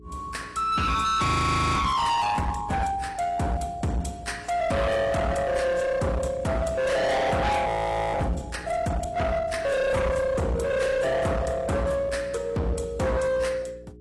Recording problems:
codec artefacts; AAC, log-spectral distance 3 dB, nothing above 11.3 kHz
distorted audio; hard clipping, uneven, signal-to-distortion ratio 6 dB
hum; 60 Hz, harmonics up to 420 Hz, SNR 22 dB
audio freezing; at 1.5 s for 0.5 s and at 7.5 s

